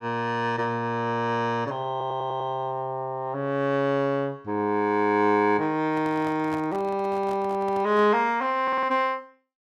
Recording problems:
audio stuttering; at 2 s and at 8.5 s
handling noise; from 6 to 8 s; peak -9 dB vs average level

